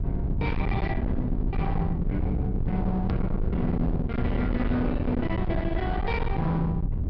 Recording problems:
treble missing; nothing above 5.5 kHz
distortion; hard clipping, uneven, signal-to-distortion ratio 6 dB
rumble; below 160 Hz, SNR 1 dB
hard cut with a click; at 3 s

